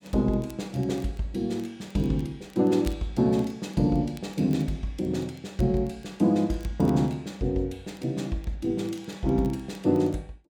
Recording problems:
crackling; vinyl, SNR 28 dB

